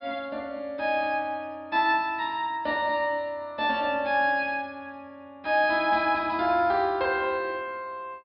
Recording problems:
low-pass filter; nothing above 5.5 kHz

